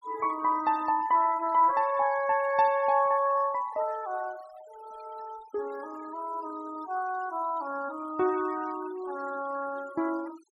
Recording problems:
noise reduction artefacts; signal-to-artefact ratio 21 dB

